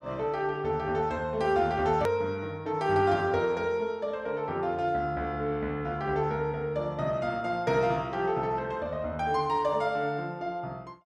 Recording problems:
hard cut with a click; at 2 s

